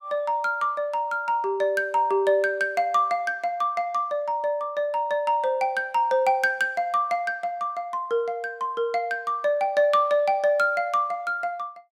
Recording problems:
none

